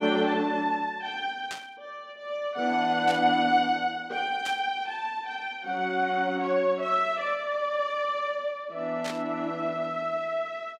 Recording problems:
static burst; 4 times, first at 1.5 s; peak -5 dB vs average level

